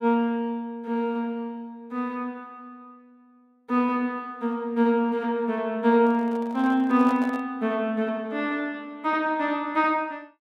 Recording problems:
handling noise; from 6 to 7.5 s; peak -8 dB vs average level

